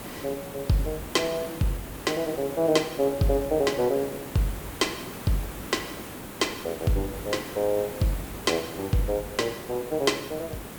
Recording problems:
hiss; slope -6 dB per octave, SNR 10 dB

